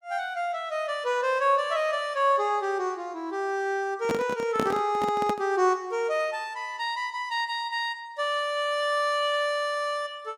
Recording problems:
handling noise; from 4 to 5.5 s; peak +3 dB vs average level

